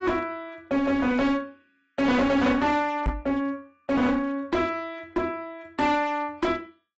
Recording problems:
codec artefacts; AAC, log-spectral distance 2 dB, nothing above 7.6 kHz
distortion; hard clipping, uneven, signal-to-distortion ratio 7 dB
microphone bump; at 3 s; peak +3 dB vs average level

